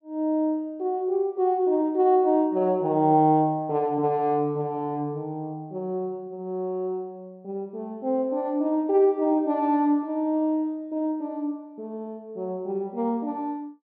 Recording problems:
none

